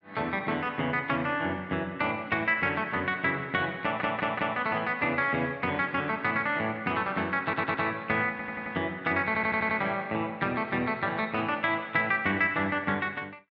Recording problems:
stutter; 4 times, first at 4 s

